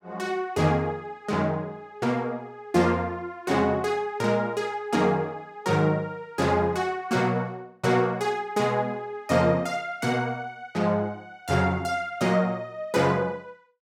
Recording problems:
none

